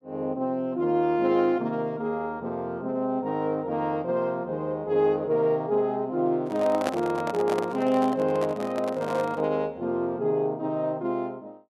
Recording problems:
microphone handling noise; from 6.5 to 9.5 s; peak +2 dB vs average level

